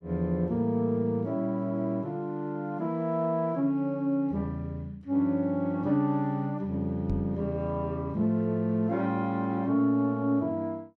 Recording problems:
microphone bump; at 7 s; peak -2 dB vs average level

